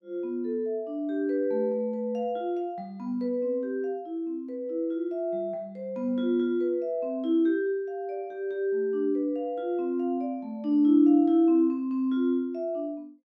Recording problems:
none

